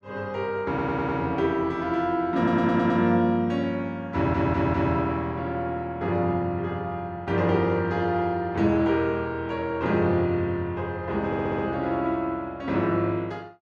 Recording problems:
stutter; 4 times, first at 0.5 s

